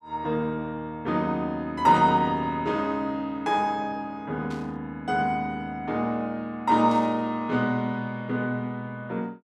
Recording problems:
burst of static; at 2 s, at 4.5 s and at 7 s; peak -13 dB vs average level

